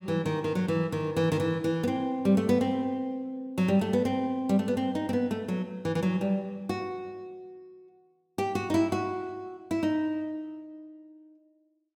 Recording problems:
none

